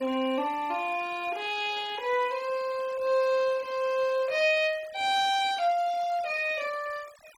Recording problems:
denoising artefacts; signal-to-artefact ratio 21 dB

